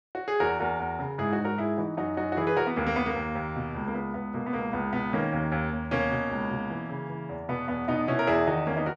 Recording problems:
none

